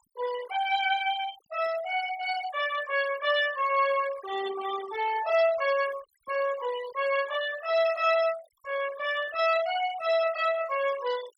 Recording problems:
noise reduction artefacts; signal-to-artefact ratio 14 dB

